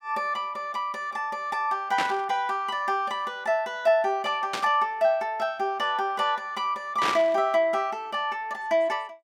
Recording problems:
burst of static; at 2 s, at 4.5 s and at 7 s; peak +2 dB vs average level

